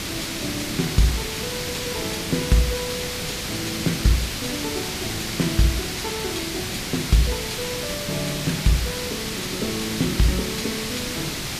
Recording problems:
background hiss; SNR 1 dB

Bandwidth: 14.5 kHz